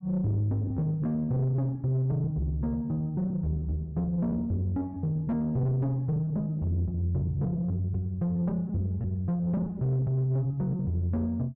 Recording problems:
distortion; soft clipping, signal-to-distortion ratio 10 dB
packet loss; 13% of the sound replaced, filled with repeated pitch periods

